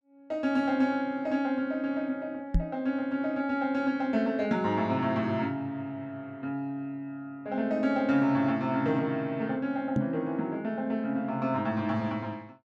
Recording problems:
microphone bump; at 2.5 s and at 10 s; peak +6 dB vs average level

